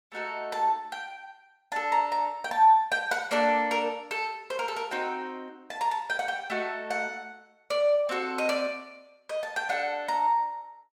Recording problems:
none

